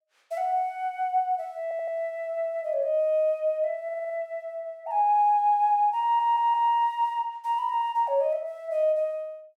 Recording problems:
audio stuttering; at 1.5 s, at 4 s and at 6 s

